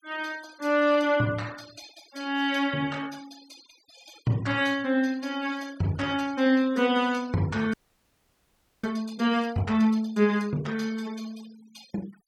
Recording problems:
denoising artefacts; signal-to-artefact ratio 23 dB
audio freezing; at 7.5 s for 1 s

